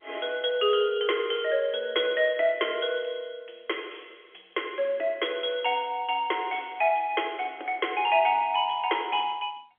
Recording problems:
telephone audio; 280 Hz to 3.4 kHz, G.711

